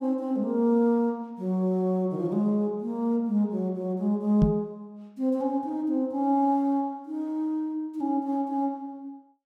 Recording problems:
microphone thump; at 4.5 s; peak +8 dB vs average level

